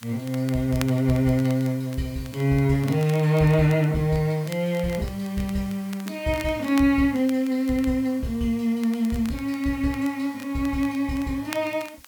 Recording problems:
hiss; slope +1 dB per octave, SNR 25 dB
crackle; vinyl, SNR 20 dB

